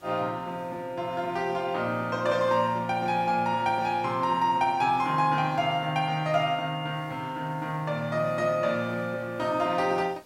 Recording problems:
background hiss; slope -4 dB per octave, SNR 29 dB

